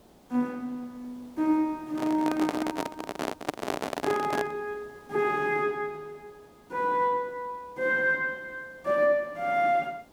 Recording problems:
background hiss; SNR 27 dB
handling noise; from 2 to 4.5 s; peak +3 dB vs average level

